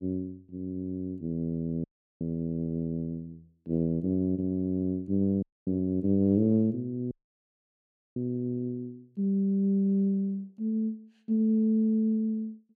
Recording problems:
audio cutting out; at 2 s, at 5.5 s and at 7 s for 1 s

